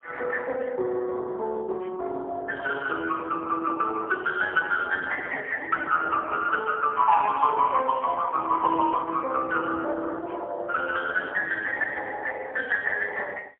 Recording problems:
phone line; 320 Hz to 3.1 kHz, AMR-NB, then MP3

